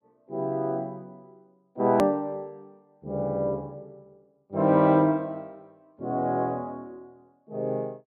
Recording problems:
click at an edit; at 2 s

